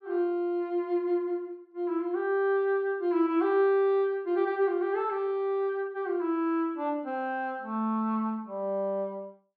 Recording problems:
none

